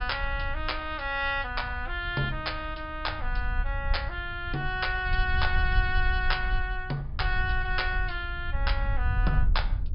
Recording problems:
treble cut off; nothing above 5.5 kHz
wind on the microphone; below 62 Hz, SNR 3 dB

